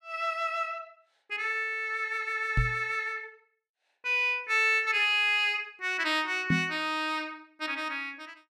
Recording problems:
knock on the microphone; at 2.5 s and at 6.5 s; peak +4 dB vs average level

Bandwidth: 14.5 kHz